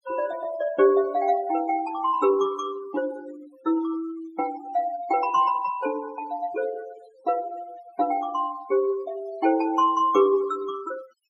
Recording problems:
denoising artefacts; signal-to-artefact ratio 20 dB

